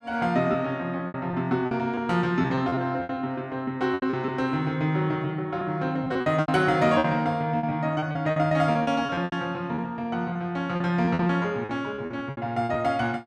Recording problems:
lost packets; 12% of the sound replaced, filled with repeated pitch periods

